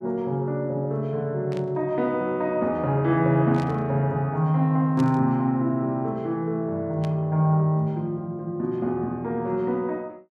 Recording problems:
burst of static; 4 times, first at 1.5 s; peak -12 dB vs average level

